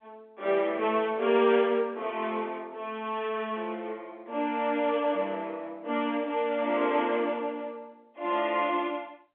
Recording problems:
phone line; 260 Hz to 3.5 kHz, G.711

